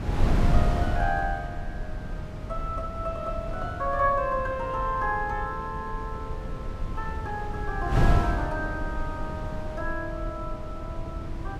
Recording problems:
wind on the microphone; below 140 Hz, SNR 1 dB

